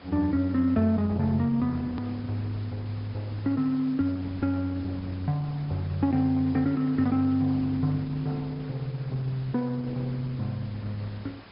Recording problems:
treble missing; nothing above 5.2 kHz
lossy codec; Opus, log-spectral distance 4 dB
hiss; slope -4 dB per octave, SNR 20 dB
edit click; at 2 s

